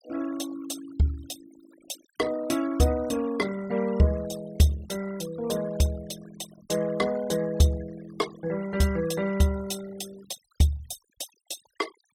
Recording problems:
noise reduction artefacts; signal-to-artefact ratio 18 dB

